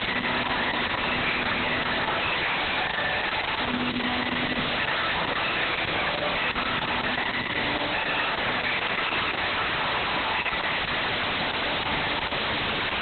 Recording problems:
lossy compression; Opus, log-spectral distance 23 dB, nothing above 4 kHz
distortion; hard clipping, uneven, signal-to-distortion ratio 2 dB
background hiss; SNR 1 dB
microphone thump; at 6.5 s; peak +4 dB vs average level

